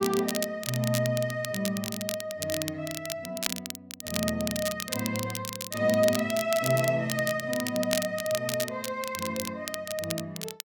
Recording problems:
crackling; vinyl, SNR 5 dB

